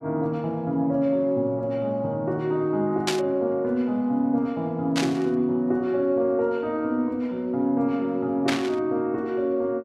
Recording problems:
static burst; at 3 s, at 5 s and at 8.5 s; peak +3 dB vs average level

